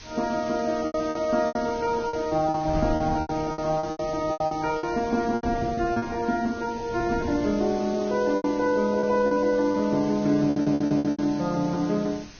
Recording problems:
lossy compression; Vorbis, log-spectral distance 7 dB
hiss; SNR 20 dB
wind noise; below 270 Hz, SNR 16 dB
packet loss; 12% of the sound replaced, filled with repeated pitch periods
stutter; at 10 s

